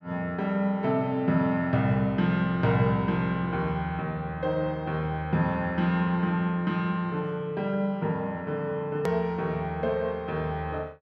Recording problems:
click at an edit; at 9 s

